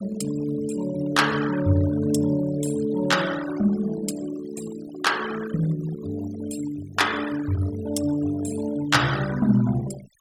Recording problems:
noise reduction artefacts; signal-to-artefact ratio 14 dB

